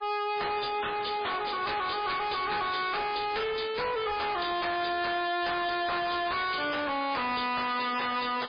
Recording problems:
lossy compression; MP3, log-spectral distance 7 dB, nothing above 4.8 kHz
distortion; hard clipping, signal-to-distortion ratio 6 dB

